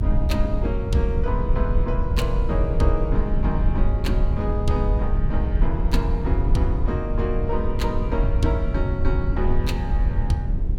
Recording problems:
low-frequency rumble; below 76 Hz, SNR -3 dB

